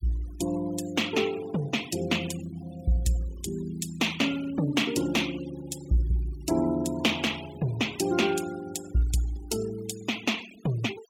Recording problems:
denoising artefacts; signal-to-artefact ratio 16 dB

